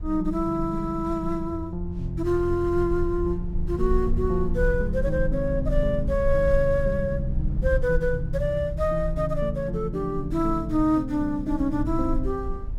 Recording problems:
low-frequency rumble; below 56 Hz, strongest tone 22 Hz, SNR 7 dB

